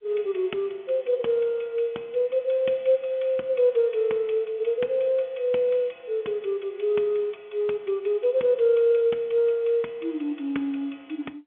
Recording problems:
phone line; 240 Hz to 3.4 kHz, G.711

